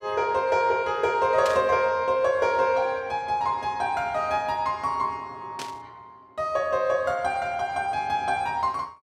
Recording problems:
burst of static; at 1.5 s and at 5.5 s; peak -5 dB vs average level

